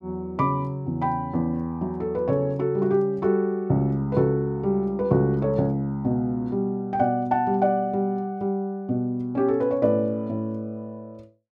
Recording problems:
none

